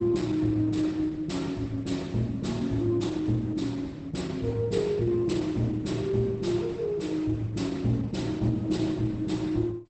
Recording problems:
lossy codec; Opus, log-spectral distance 3 dB, nothing above 8.2 kHz

